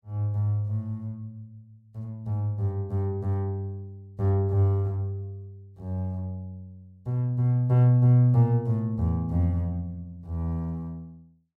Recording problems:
none

